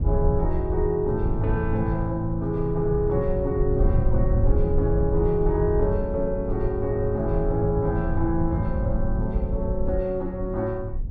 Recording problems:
rumble; below 80 Hz, SNR 3 dB

